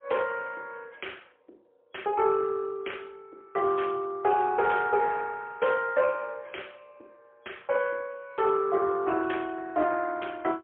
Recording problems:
phone line; 280 Hz to 3.4 kHz, AMR-NB, then MP3

